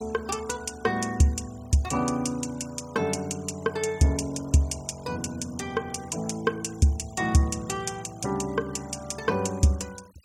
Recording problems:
denoising artefacts; signal-to-artefact ratio 23 dB

